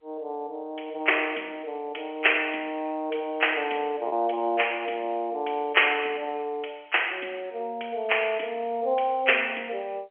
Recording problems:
phone line; 320 Hz to 3.2 kHz, G.711
lost packets; 0.4% of the sound replaced, filled with repeated pitch periods

